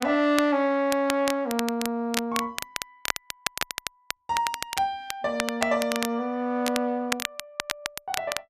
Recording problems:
crackle; vinyl, SNR 6 dB

